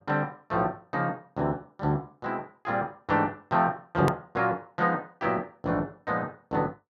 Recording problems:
click at an edit; at 4 s

